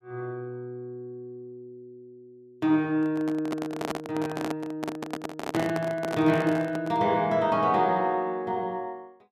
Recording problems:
microphone handling noise; from 3 to 7 s; peak 0 dB vs average level

